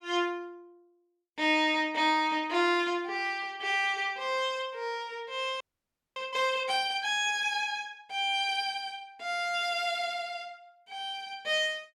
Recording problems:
audio freezing; at 5.5 s for 0.5 s

